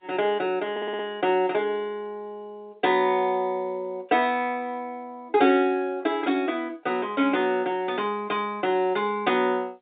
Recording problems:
telephone audio; 220 Hz to 3.7 kHz, G.711
audio stuttering; at 0.5 s

